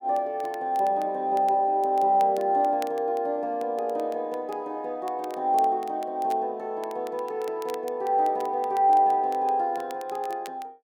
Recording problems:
crackle; vinyl, SNR 25 dB

